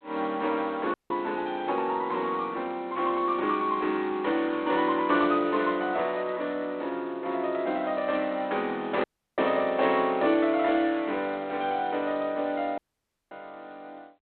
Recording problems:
phone line; 240 Hz to 3.8 kHz, G.726
dropout; at 1 s, at 9 s and at 13 s for 0.5 s

